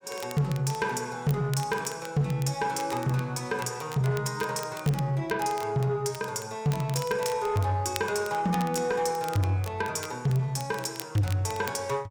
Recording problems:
distortion; soft clipping, signal-to-distortion ratio 10 dB
crackling; vinyl, SNR 16 dB

